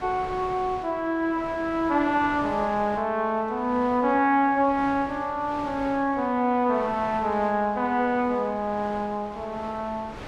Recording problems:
wind on the microphone; below 1.6 kHz, SNR 17 dB

